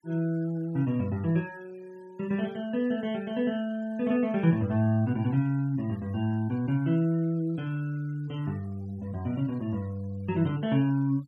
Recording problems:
denoising artefacts; signal-to-artefact ratio 27 dB

